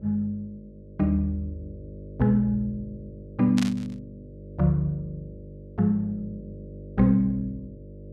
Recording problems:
hum; 50 Hz, harmonics up to 600 Hz, SNR 17 dB
burst of static; at 3.5 s; peak -3 dB vs average level

